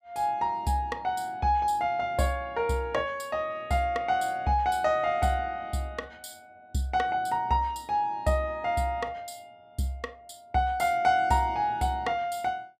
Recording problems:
none

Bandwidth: 15 kHz